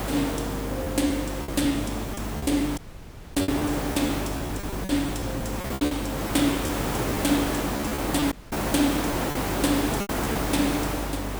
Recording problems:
hum; 50 Hz, harmonics up to 350 Hz, SNR 8 dB
hiss; slope -6 dB per octave, SNR 2 dB
packet loss; 10% of the sound replaced, filled with repeated pitch periods
audio cutting out; at 3 s for 0.5 s and at 8.5 s

